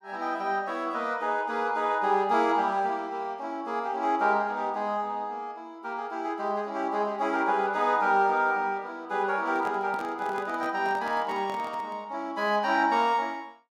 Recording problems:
handling noise; from 9.5 to 12 s; peak -10 dB vs average level

